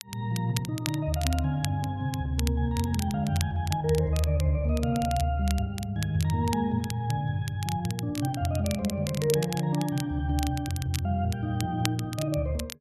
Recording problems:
crackle; vinyl, SNR 12 dB

